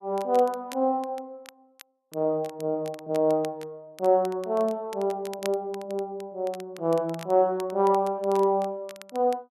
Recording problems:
crackling; vinyl, SNR 22 dB

